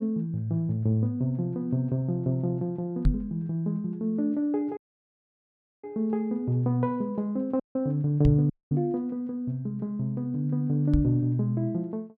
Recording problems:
knock on the microphone; at 3 s, at 8.5 s and at 11 s; peak +7 dB vs average level
audio cutting out; at 5 s for 1 s, at 7.5 s and at 8.5 s

